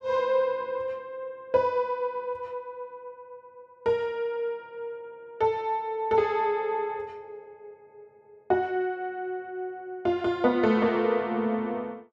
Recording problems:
none

